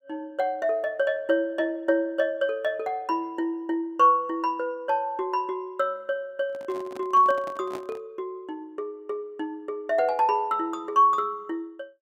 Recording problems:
handling noise; from 6.5 to 8 s; peak -9 dB vs average level

